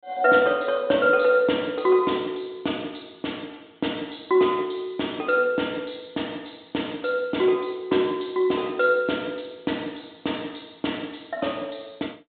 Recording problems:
low-pass filter; nothing above 4 kHz

